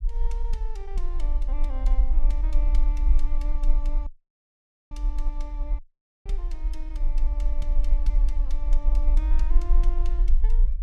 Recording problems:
low-frequency rumble; below 40 Hz, strongest tone 18 Hz, SNR -16 dB
audio cutting out; at 4 s for 1 s and at 6 s

